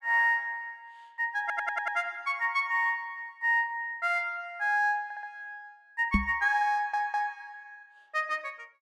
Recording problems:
stutter; at 1.5 s, at 5 s and at 6.5 s
knock on the microphone; at 6 s; peak +6 dB vs average level

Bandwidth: 14 kHz